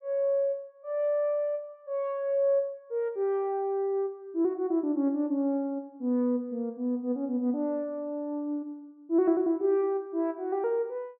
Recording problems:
none

